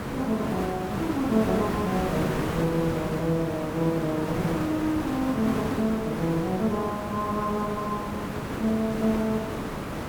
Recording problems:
hiss; slope -7 dB per octave, SNR 4 dB
wind on the microphone; below 990 Hz, SNR 24 dB

